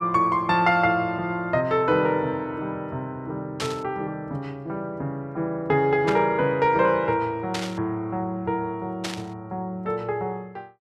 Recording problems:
burst of static; 4 times, first at 3.5 s; peak -1 dB vs average level

